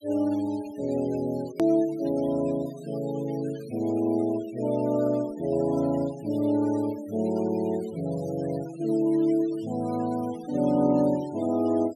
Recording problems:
noise reduction artefacts; signal-to-artefact ratio 21 dB
edit click; at 1.5 s

